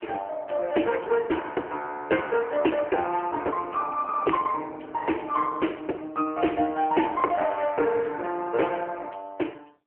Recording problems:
telephone audio; 280 Hz to 3.1 kHz, AMR-NB

